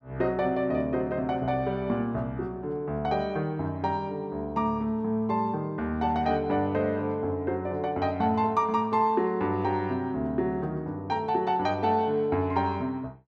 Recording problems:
none

